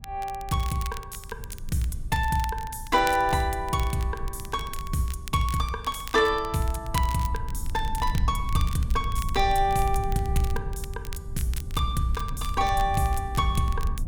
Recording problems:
rumble; below 80 Hz, SNR 8 dB
crackling; vinyl, SNR 17 dB

